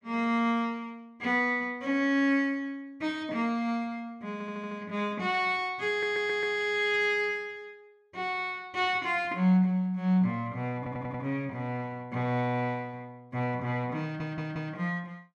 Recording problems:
audio stuttering; 4 times, first at 4.5 s

